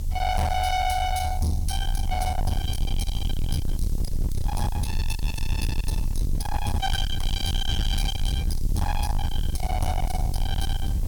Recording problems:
distortion; soft clipping, signal-to-distortion ratio 6 dB
background hiss; SNR 19 dB
low-frequency rumble; below 82 Hz, SNR 0 dB

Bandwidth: 17.5 kHz